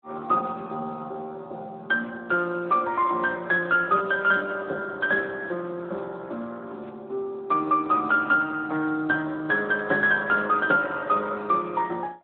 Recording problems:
phone line; 260 Hz to 2.3 kHz, Speex

